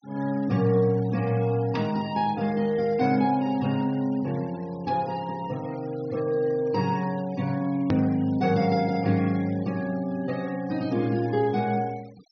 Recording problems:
treble cut off; nothing above 5.9 kHz
denoising artefacts; signal-to-artefact ratio 23 dB
edit click; at 8 s

